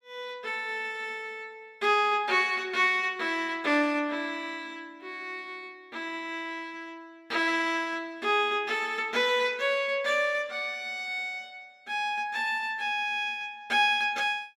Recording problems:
none

